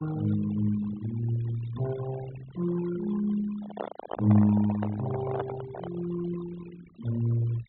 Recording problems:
treble cut off; nothing above 3.9 kHz
denoising artefacts; signal-to-artefact ratio 15 dB
microphone handling noise; from 3.5 to 6 s; peak 0 dB vs average level

